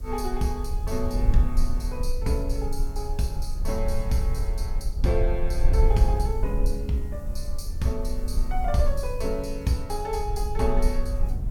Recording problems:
background hiss; SNR 27 dB
low-frequency rumble; below 54 Hz, SNR -1 dB

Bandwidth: 17.5 kHz